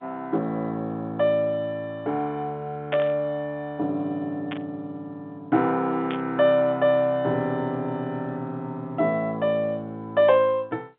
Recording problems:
telephone audio; 170 Hz to 3.6 kHz, G.711
burst of static; at 3 s, at 4.5 s and at 6 s; peak -2 dB vs average level

